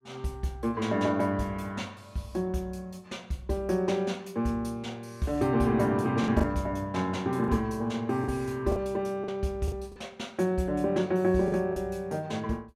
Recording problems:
lost packets; 3% of the sound replaced, filled with the last packet

